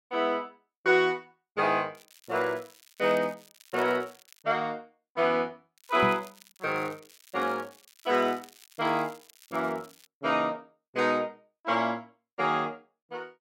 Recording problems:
crackling; from 2 to 4.5 s and from 6 to 10 s; loose cable, SNR 25 dB
microphone thump; at 6 s; peak 0 dB vs average level

